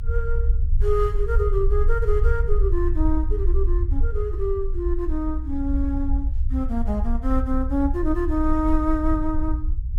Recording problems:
low-frequency rumble; below 60 Hz, strongest tone 24 Hz, SNR -1 dB

